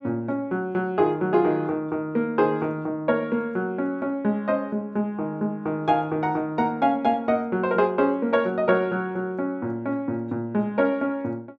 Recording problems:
none

